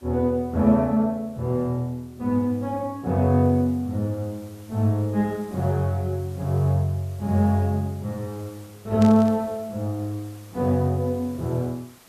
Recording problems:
background hiss; slope -3 dB per octave, SNR 27 dB
static burst; at 9 s; peak -9 dB vs average level

